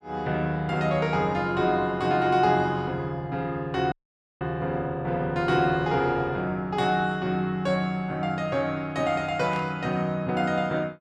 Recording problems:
audio cutting out; at 4 s
burst of static; at 9.5 s; peak -13 dB vs average level

